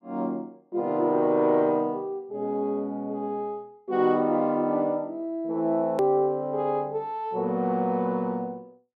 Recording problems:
hard cut with a click; at 6 s

